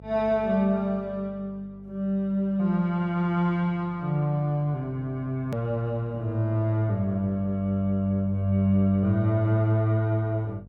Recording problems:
hum; 50 Hz, harmonics up to 700 Hz, SNR 23 dB
click at an edit; at 5.5 s

